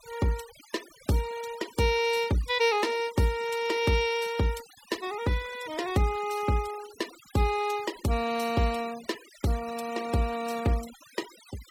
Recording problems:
denoising artefacts; signal-to-artefact ratio 16 dB

